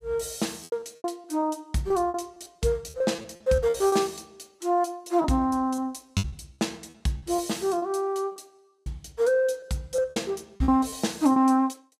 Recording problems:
lost packets; 12% of the sound replaced, filled with repeated pitch periods

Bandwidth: 15 kHz